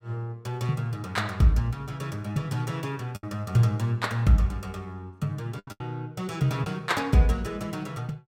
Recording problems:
packet loss; 3% of the sound replaced, filled with the last packet

